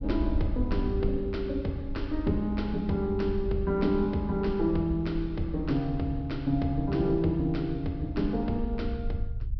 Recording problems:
treble cut off; nothing above 5.5 kHz
low-frequency rumble; below 74 Hz, SNR 8 dB

